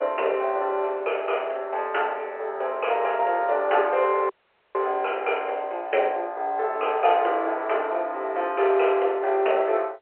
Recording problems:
phone line; 340 Hz to 3.1 kHz, G.711
audio cutting out; at 4.5 s

